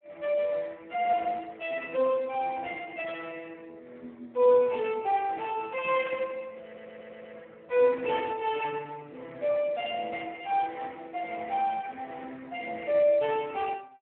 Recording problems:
phone line; 240 Hz to 3.1 kHz, Speex
audio stuttering; at 6.5 s

